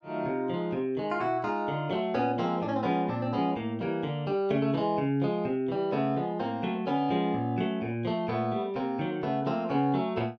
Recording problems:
none

